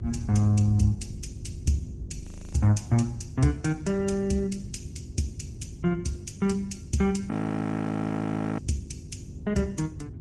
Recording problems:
lossy compression; MP3, then Opus, log-spectral distance 2 dB, nothing above 10.1 kHz
hum; 50 Hz, harmonics up to 400 Hz, SNR 18 dB
rumble; below 160 Hz, SNR 16 dB
wind on the microphone; below 110 Hz, SNR 13 dB
frozen audio; at 2 s and at 7.5 s for 1.5 s

